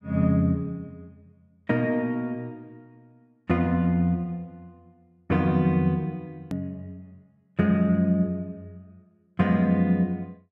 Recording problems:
click at an edit; at 6.5 s

